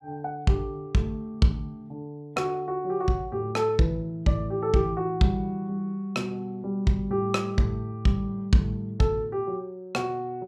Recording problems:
none

